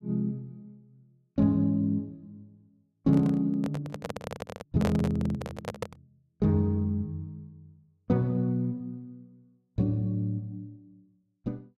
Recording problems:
handling noise; from 3 to 6 s; peak 0 dB vs average level

